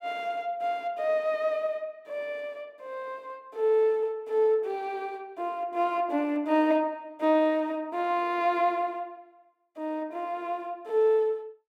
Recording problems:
none

